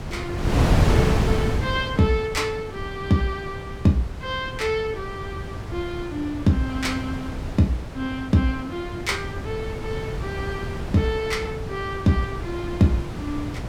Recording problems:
wind on the microphone; below 340 Hz, SNR 3 dB

